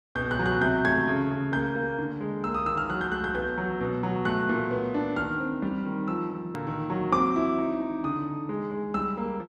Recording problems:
hard cut with a click; at 6.5 s

